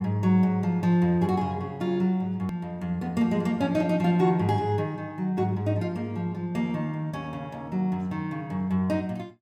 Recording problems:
edit click; at 2.5 s

